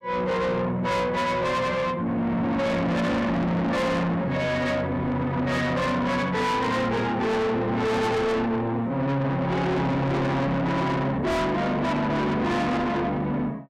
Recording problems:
distortion; soft clipping, signal-to-distortion ratio 6 dB

